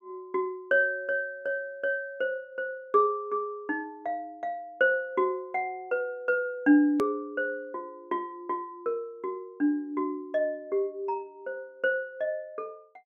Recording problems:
edit click; at 7 s

